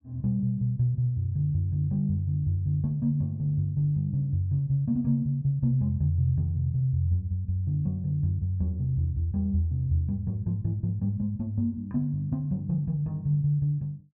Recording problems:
none

